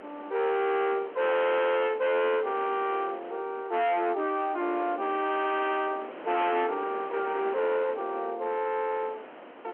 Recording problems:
telephone audio; 240 Hz to 3.5 kHz, G.711
distortion; hard clipping, uneven, signal-to-distortion ratio 7 dB
wind noise; below 1.4 kHz, SNR 16 dB

